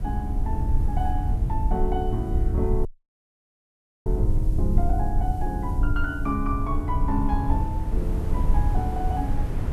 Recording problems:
background hiss; slope +1 dB per octave, SNR 27 dB
rumble; below 76 Hz, SNR -3 dB
wind on the microphone; below 270 Hz, SNR 9 dB
audio cutting out; at 3 s for 1 s

